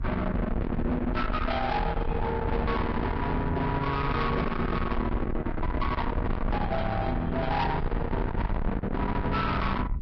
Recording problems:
lossy codec; Vorbis, log-spectral distance 2 dB, nothing above 5.2 kHz
distorted audio; soft clipping, signal-to-distortion ratio 7 dB
wind noise; below 390 Hz, SNR 4 dB

